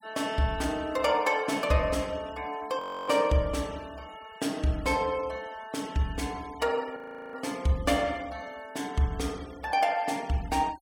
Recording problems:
denoising artefacts; signal-to-artefact ratio 22 dB
audio freezing; at 3 s and at 7 s

